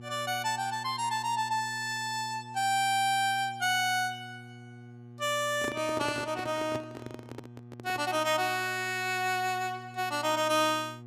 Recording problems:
electrical hum; 60 Hz, harmonics up to 840 Hz, SNR 18 dB
handling noise; from 5.5 to 8 s; peak -4 dB vs average level

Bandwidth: 15 kHz